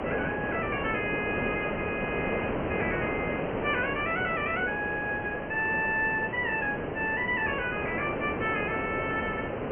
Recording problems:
treble missing; nothing above 3 kHz
hiss; SNR 2 dB

